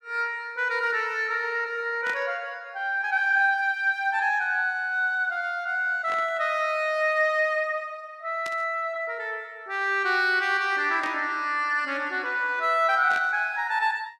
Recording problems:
burst of static; 5 times, first at 2 s; peak -9 dB vs average level

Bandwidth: 14.5 kHz